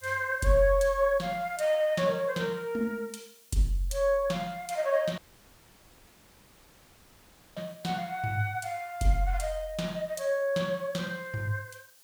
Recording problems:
hiss; slope +1 dB per octave, SNR 26 dB
dropout; at 5 s for 2.5 s

